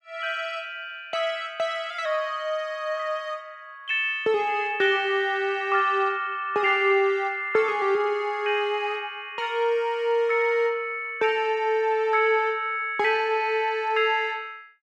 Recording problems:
none

